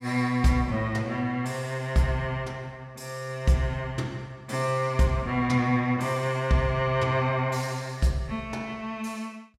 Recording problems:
none

